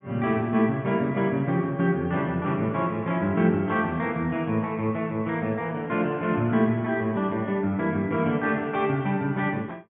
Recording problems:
low-pass filter; nothing above 4 kHz

